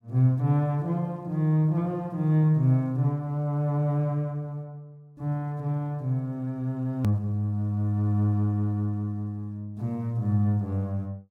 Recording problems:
edit click; at 7 s

